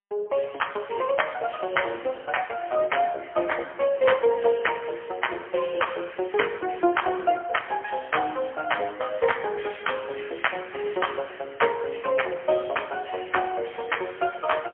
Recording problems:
telephone audio; 300 Hz to 3.2 kHz, AMR-NB, then MP3

